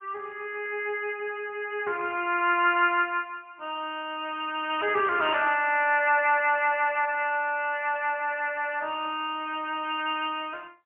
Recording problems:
telephone audio; 320 Hz to 3.2 kHz, AMR-NB, then MP3

